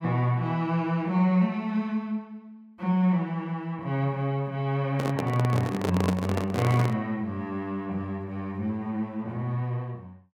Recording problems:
handling noise; from 5 to 7 s; peak +3 dB vs average level

